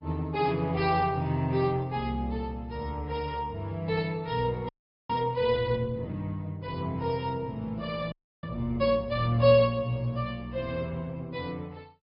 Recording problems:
low-pass filter; nothing above 4.8 kHz
codec artefacts; Opus, log-spectral distance 2 dB
frozen audio; at 4.5 s and at 8 s

